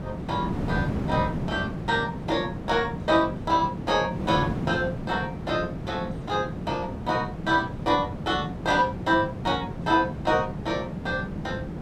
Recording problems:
wind noise; below 310 Hz, SNR 6 dB

